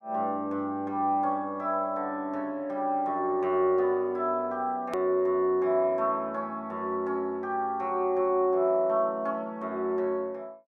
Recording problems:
edit click; at 5 s

